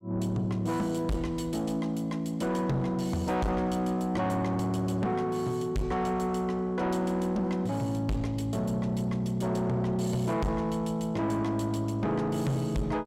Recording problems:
distorted audio; soft clipping, signal-to-distortion ratio 7 dB

